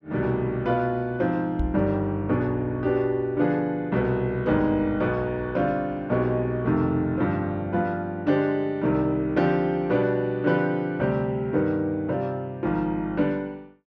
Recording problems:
microphone thump; at 1.5 s; peak +1 dB vs average level

